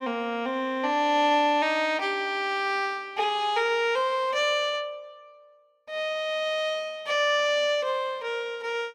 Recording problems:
none

